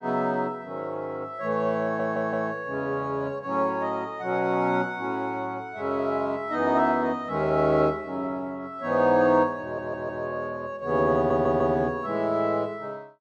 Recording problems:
audio stuttering; at 2 s, at 9.5 s and at 11 s

